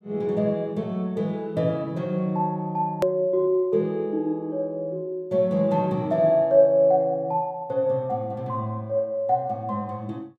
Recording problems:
edit click; at 3 s

